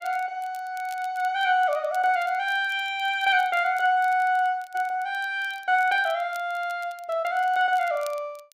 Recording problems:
crackle; vinyl, SNR 26 dB

